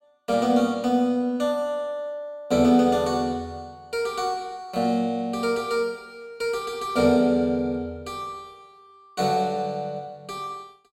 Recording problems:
none

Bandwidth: 16 kHz